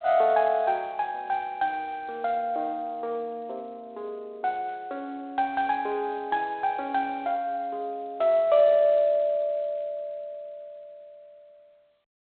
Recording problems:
phone line; 340 Hz to 3.9 kHz, G.726

